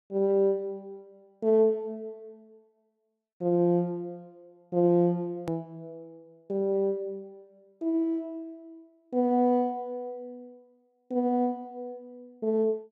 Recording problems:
click at an edit; at 5.5 s

